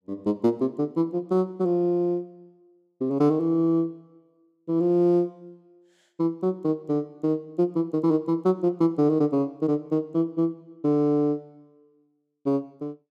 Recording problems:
none

